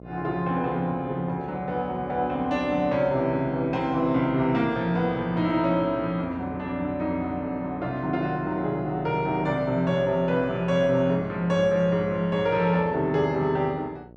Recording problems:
mains hum; 60 Hz, harmonics up to 780 Hz, SNR 19 dB

